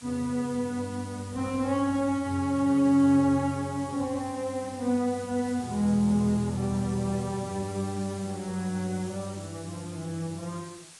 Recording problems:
codec artefacts; AAC, log-spectral distance 7 dB, nothing above 10.1 kHz
background hiss; slope +1 dB per octave, SNR 18 dB

